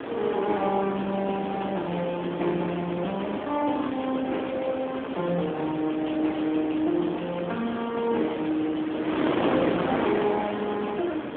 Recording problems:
telephone audio; 220 Hz to 3.4 kHz, AMR-NB
wind noise; below 960 Hz, SNR 5 dB

